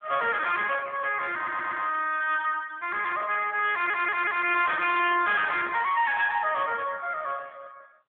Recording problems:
phone line; 390 Hz to 3.4 kHz, AMR-NB
distortion; hard clipping, uneven, signal-to-distortion ratio 10 dB
stutter; at 1.5 s and at 3.5 s
microphone handling noise; from 4.5 to 6 s; peak -11 dB vs average level

